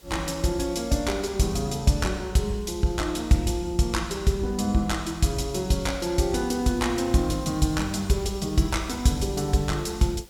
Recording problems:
hiss; SNR 28 dB

